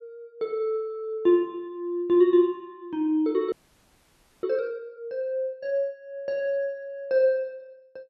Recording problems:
frozen audio; at 3.5 s for 1 s

